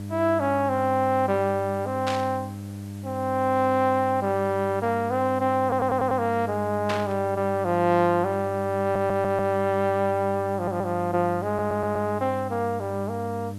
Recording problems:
hum; 50 Hz, harmonics up to 700 Hz, SNR 11 dB
hiss; slope -2 dB per octave, SNR 26 dB
static burst; at 2 s and at 7 s; peak -2 dB vs average level
stutter; 4 times, first at 5.5 s

